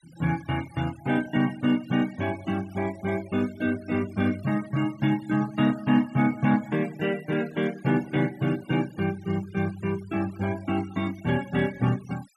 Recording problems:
denoising artefacts; signal-to-artefact ratio 20 dB

